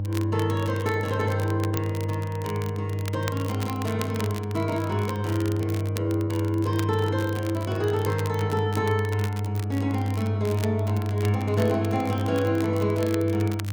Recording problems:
hum; 50 Hz, harmonics up to 500 Hz, SNR 1 dB
crackling; vinyl, SNR 14 dB

